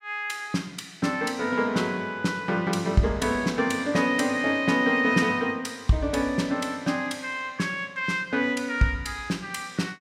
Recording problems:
none

